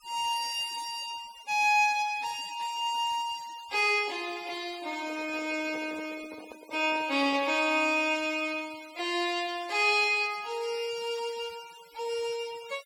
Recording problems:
denoising artefacts; signal-to-artefact ratio 20 dB
handling noise; from 5 to 7.5 s; peak -11 dB vs average level

